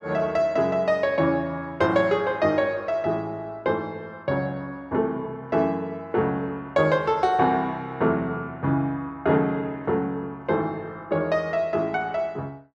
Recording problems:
none

